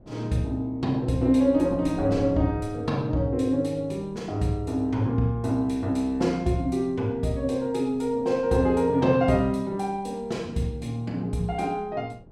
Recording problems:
wind noise; below 320 Hz, SNR 19 dB

